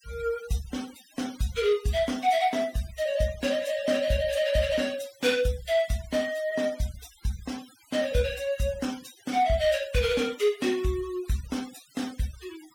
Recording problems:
noise reduction artefacts; signal-to-artefact ratio 18 dB

